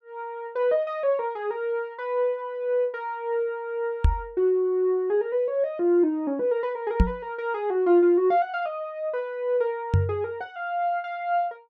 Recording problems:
microphone bump; at 4 s, at 7 s and at 10 s; peak +9 dB vs average level

